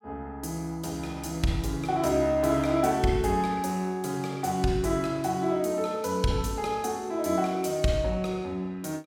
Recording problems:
none

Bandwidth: 17 kHz